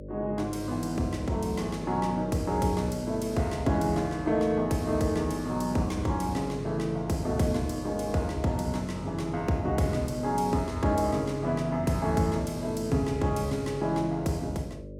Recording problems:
mains hum; 50 Hz, harmonics up to 600 Hz, SNR 13 dB

